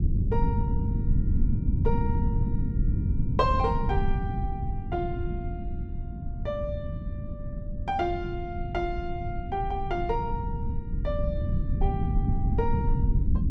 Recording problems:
low-frequency rumble; below 130 Hz, SNR -3 dB

